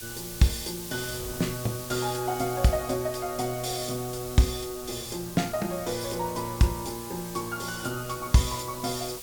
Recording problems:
background hiss; SNR 10 dB
wind noise; below 250 Hz, SNR 21 dB

